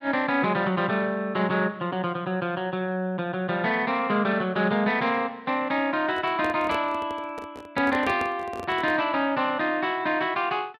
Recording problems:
handling noise; from 6 to 9 s; peak -5 dB vs average level

